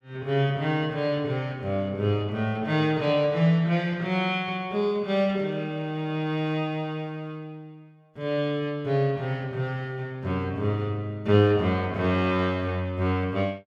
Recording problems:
none

